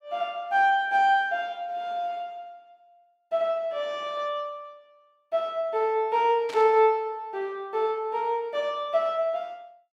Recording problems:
burst of static; at 6.5 s; peak -10 dB vs average level

